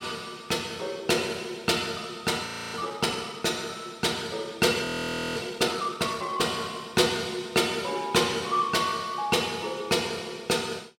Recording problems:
audio freezing; at 2.5 s and at 5 s for 0.5 s

